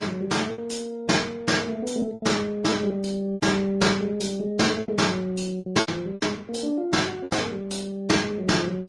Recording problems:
lossy compression; Opus, then Vorbis, log-spectral distance 3 dB, nothing above 10.4 kHz
packet loss; 9% of the sound replaced, filled with repeated pitch periods

